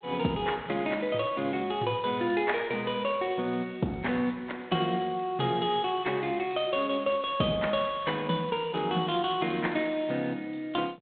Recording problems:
phone line; 150 Hz to 3.7 kHz, G.726

